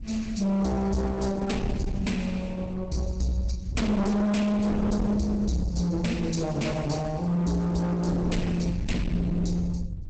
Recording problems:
lossy compression; Opus, log-spectral distance 3 dB, nothing above 8 kHz
distorted audio; hard clipping, signal-to-distortion ratio 6 dB
wind noise; below 200 Hz, SNR 7 dB

